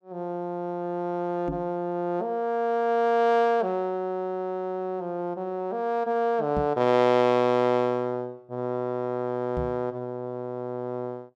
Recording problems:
knock on the microphone; at 1.5 s, at 6.5 s and at 9.5 s; peak -2 dB vs average level

